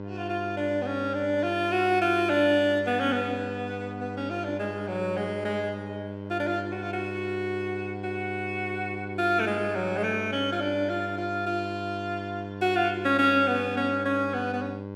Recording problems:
hum; 50 Hz, harmonics up to 1.5 kHz, SNR 10 dB

